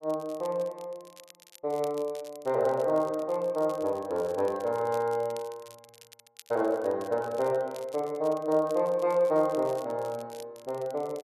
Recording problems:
crackling; vinyl, SNR 23 dB

